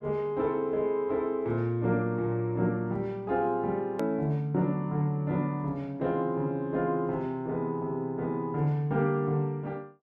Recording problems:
click at an edit; at 4 s

